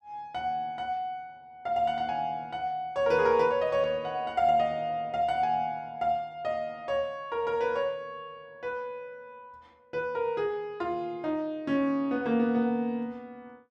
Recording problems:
none

